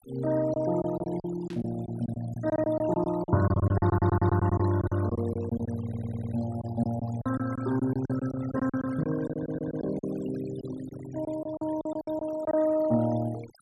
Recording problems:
denoising artefacts; signal-to-artefact ratio 16 dB
packet loss; 13% of the sound replaced, filled with silence
burst of static; at 1.5 s; peak -15 dB vs average level
stutter; at 4 s, at 6 s and at 9.5 s

